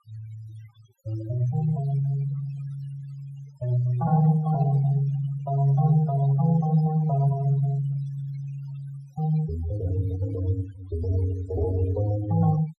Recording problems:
noise reduction artefacts; signal-to-artefact ratio 19 dB

